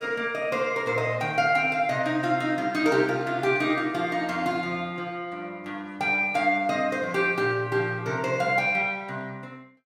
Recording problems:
none

